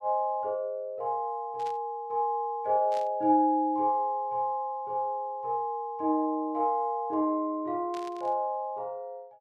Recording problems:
static burst; at 1.5 s, at 3 s and at 8 s; peak -13 dB vs average level

